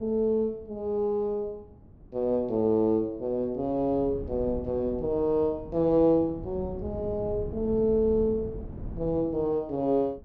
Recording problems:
wind noise; below 220 Hz, SNR 15 dB

